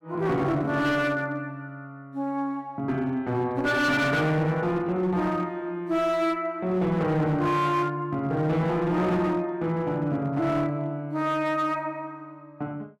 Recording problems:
distortion; hard clipping, uneven, signal-to-distortion ratio 11 dB

